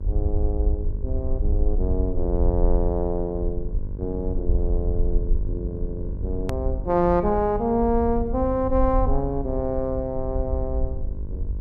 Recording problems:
mains hum; 50 Hz, harmonics up to 950 Hz, SNR 13 dB
low-frequency rumble; below 62 Hz, SNR 2 dB
click at an edit; at 6.5 s

